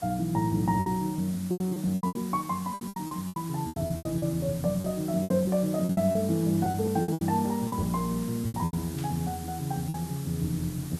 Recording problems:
background hiss; slope -2 dB per octave, SNR 15 dB
lost packets; 14% of the sound replaced, filled with repeated pitch periods
static burst; at 9 s; peak -12 dB vs average level

